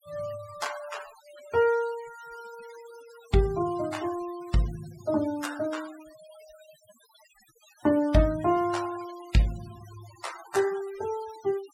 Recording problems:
denoising artefacts; signal-to-artefact ratio 18 dB

